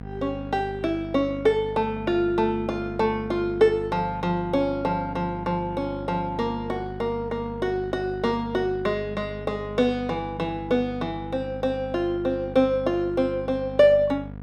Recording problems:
hum; 50 Hz, harmonics up to 1.2 kHz, SNR 12 dB

